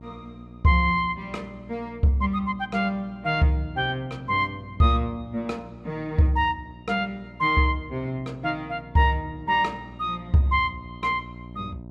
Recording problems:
hum; 60 Hz, harmonics up to 960 Hz, SNR 19 dB

